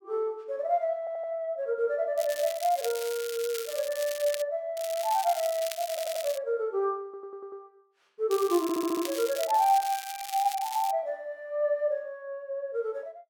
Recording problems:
audio stuttering; 4 times, first at 1 s
crackle; from 2 to 4.5 s, from 5 to 6.5 s and from 8.5 to 11 s; loose cable, SNR 10 dB

